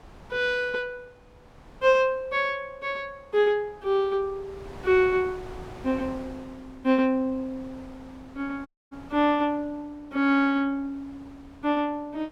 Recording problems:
wind noise; below 870 Hz, SNR 22 dB
dropout; at 8.5 s

